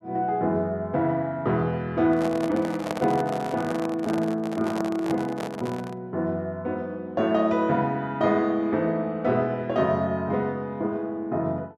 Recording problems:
handling noise; from 2 to 6 s; peak -1 dB vs average level

